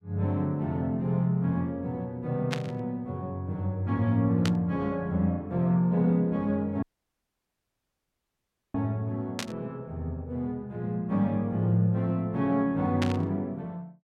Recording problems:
burst of static; 4 times, first at 2.5 s; peak 0 dB vs average level
dropout; at 7 s for 2 s

